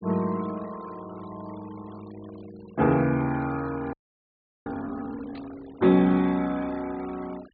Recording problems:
treble missing; nothing above 4.6 kHz
noise reduction artefacts; signal-to-artefact ratio 23 dB
frozen audio; at 4 s for 0.5 s
burst of static; at 5.5 s; peak -20 dB vs average level

